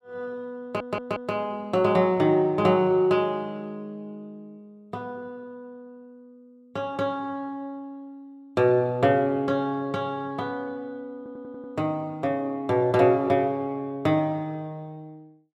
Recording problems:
audio stuttering; at 0.5 s and at 11 s

